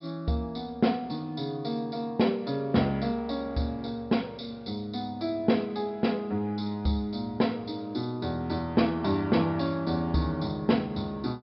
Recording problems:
treble missing; nothing above 5.2 kHz

